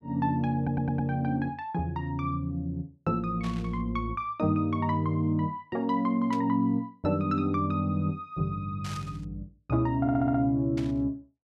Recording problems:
audio stuttering; at 0.5 s and at 10 s
burst of static; 4 times, first at 3.5 s; peak -9 dB vs average level

